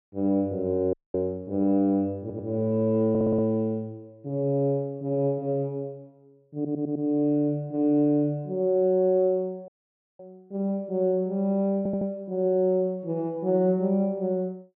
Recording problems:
audio cutting out; at 1 s and at 9.5 s for 0.5 s
audio stuttering; 4 times, first at 2 s

